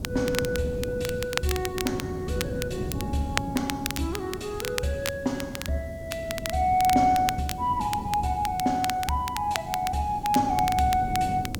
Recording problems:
hiss; slope +6 dB per octave, SNR 29 dB
wind noise; below 270 Hz, SNR 9 dB
crackle; vinyl, SNR 8 dB

